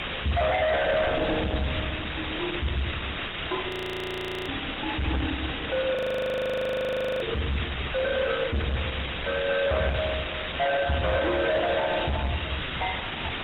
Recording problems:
lossy compression; AAC, then Opus, log-spectral distance 19 dB, nothing above 17.7 kHz
distorted audio; hard clipping, signal-to-distortion ratio 7 dB
hiss; SNR 5 dB
wind noise; below 490 Hz, SNR 16 dB
frozen audio; at 3.5 s for 1 s and at 6 s for 1.5 s

